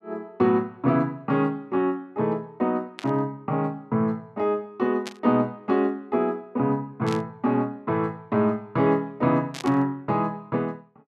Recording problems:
static burst; 4 times, first at 3 s; peak -6 dB vs average level

